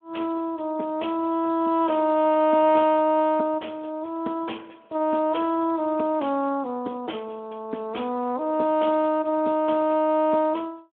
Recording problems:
telephone audio; 220 Hz to 3.4 kHz, Speex

